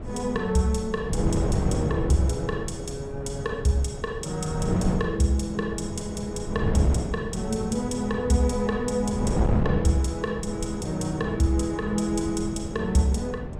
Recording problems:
wind on the microphone; below 260 Hz, SNR 4 dB

